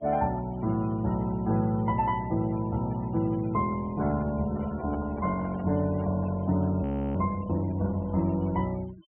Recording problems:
treble missing; nothing above 3.1 kHz
noise reduction artefacts; signal-to-artefact ratio 21 dB
handling noise; from 4.5 to 6.5 s; peak -10 dB vs average level
audio freezing; at 7 s

